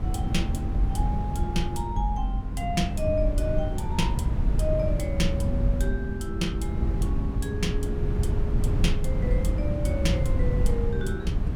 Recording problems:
wind noise; below 120 Hz, SNR -2 dB

